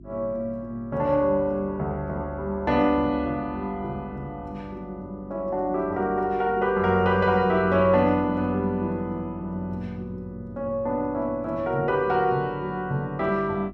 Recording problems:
hum; 50 Hz, harmonics up to 350 Hz, SNR 20 dB

